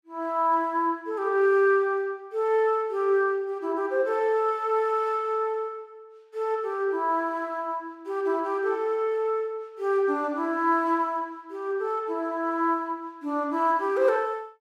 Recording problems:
none

